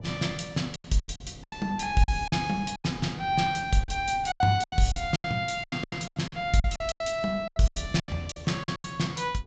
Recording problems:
treble cut off; nothing above 8 kHz
wind noise; below 290 Hz, SNR 18 dB
packet loss; 17% of the sound replaced, filled with silence

